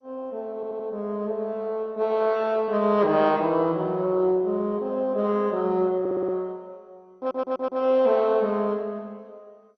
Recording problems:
lossy codec; MP2, log-spectral distance 2 dB, nothing above 5.8 kHz
audio stuttering; at 0.5 s, at 6 s and at 7 s

